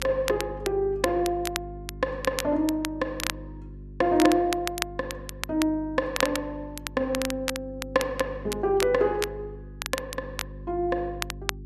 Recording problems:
hum; 50 Hz, harmonics up to 400 Hz, SNR 15 dB
crackling; vinyl, SNR 8 dB

